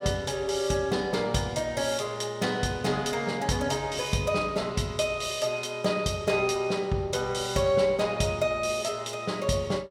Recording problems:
none

